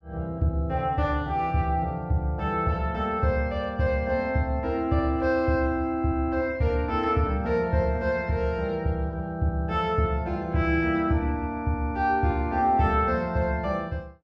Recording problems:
none

